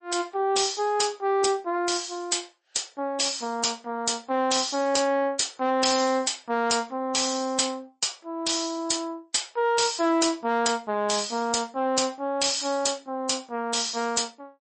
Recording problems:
codec artefacts; MP3, log-spectral distance 8 dB, nothing above 8.2 kHz
distorted audio; soft clipping, signal-to-distortion ratio 9 dB

